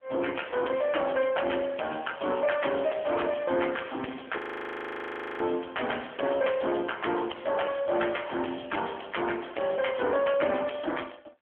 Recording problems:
telephone audio; 240 Hz to 3.3 kHz, AMR-NB
distortion; soft clipping, signal-to-distortion ratio 9 dB
audio freezing; at 4.5 s for 1 s

